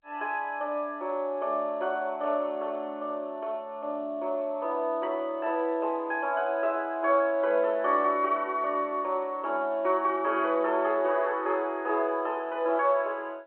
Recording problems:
telephone audio; 280 Hz to 3.5 kHz, G.711

